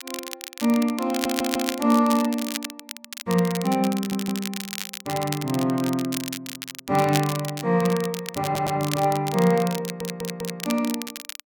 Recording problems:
crackling; vinyl, SNR 9 dB
stutter; 4 times, first at 1 s

